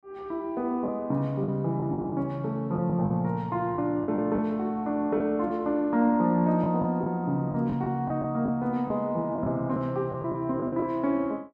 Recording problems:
lost packets; 7% of the sound replaced, filled with the last packet

